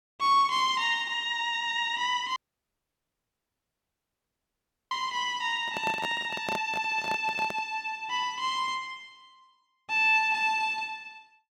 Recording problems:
dropout; at 2.5 s for 2.5 s
microphone handling noise; from 5.5 to 7.5 s; peak -3 dB vs average level

